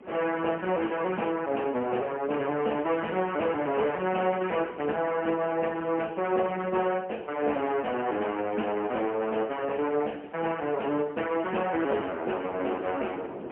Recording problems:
telephone audio; 260 Hz to 3.1 kHz, AMR-NB, then MP3
wind on the microphone; below 590 Hz, SNR 19 dB

